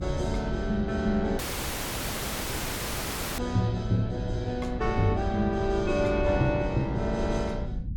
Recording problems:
rumble; below 120 Hz, SNR 7 dB
audio cutting out; at 1.5 s for 2 s

